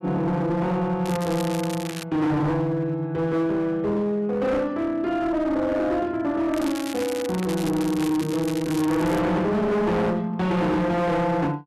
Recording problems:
distortion; hard clipping, signal-to-distortion ratio 8 dB
crackling; at 1 s and from 6.5 to 9 s; loose cable, SNR 13 dB

